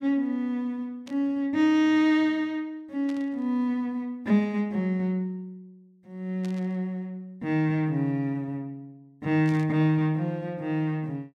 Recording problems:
burst of static; 4 times, first at 1 s; peak -15 dB vs average level

